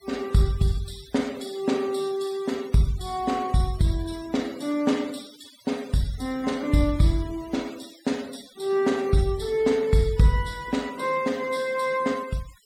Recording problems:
denoising artefacts; signal-to-artefact ratio 21 dB

